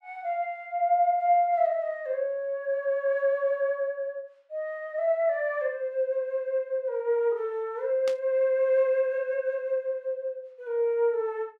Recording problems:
burst of static; at 8 s; peak -8 dB vs average level

